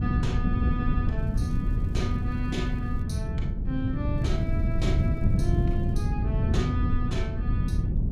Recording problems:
low-frequency rumble; below 76 Hz, SNR 6 dB
wind on the microphone; below 140 Hz, SNR -7 dB
crackle; from 1 to 3 s and from 4 to 6 s; loose cable, SNR 29 dB

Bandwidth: 15 kHz